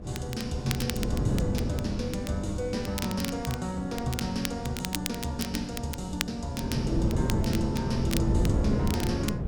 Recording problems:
wind on the microphone; below 250 Hz, SNR -1 dB
crackling; vinyl, SNR 7 dB

